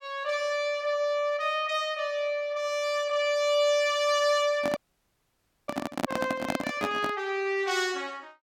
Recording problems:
handling noise; from 4.5 to 7 s; peak +3 dB vs average level
audio freezing; at 5 s for 1 s

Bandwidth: 17 kHz